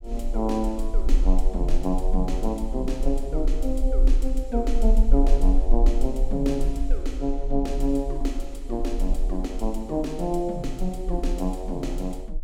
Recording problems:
rumble; below 38 Hz, strongest tone 28 Hz, SNR 0 dB

